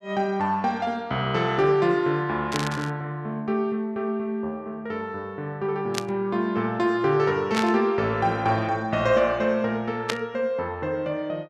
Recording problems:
burst of static; 4 times, first at 2.5 s; peak +3 dB vs average level

